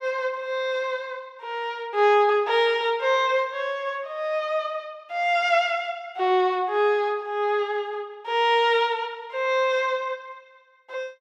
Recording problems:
none

